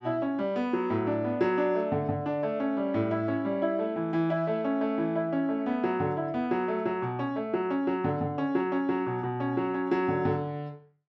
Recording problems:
none

